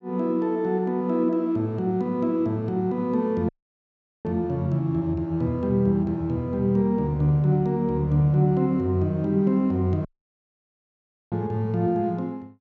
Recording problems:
audio cutting out; at 3.5 s for 1 s and at 10 s for 1.5 s

